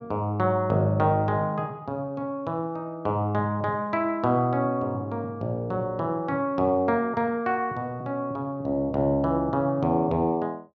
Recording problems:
none

